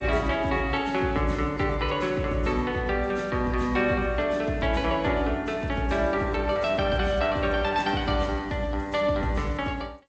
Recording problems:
lossy compression; G.722, then AAC, log-spectral distance 2 dB, nothing above 7.6 kHz

